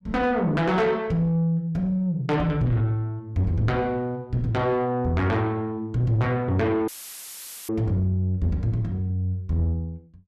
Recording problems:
distorted audio; soft clipping, signal-to-distortion ratio 12 dB
dropout; at 7 s for 1 s; filled with static

